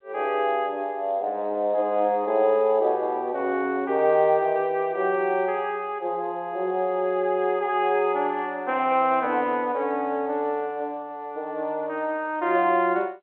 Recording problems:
telephone audio; 260 Hz to 3.6 kHz, G.711

